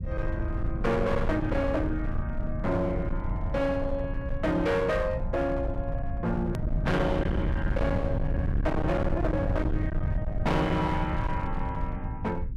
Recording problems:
distorted audio; hard clipping, uneven, signal-to-distortion ratio 7 dB
low-frequency rumble; below 150 Hz, SNR 2 dB
edit click; at 6.5 s

